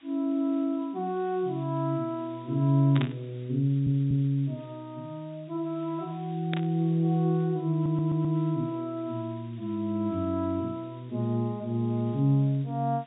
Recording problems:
low-pass filter; nothing above 4 kHz
background hiss; SNR 29 dB
static burst; at 3 s and at 6.5 s; peak -3 dB vs average level
audio stuttering; at 3.5 s and at 7.5 s

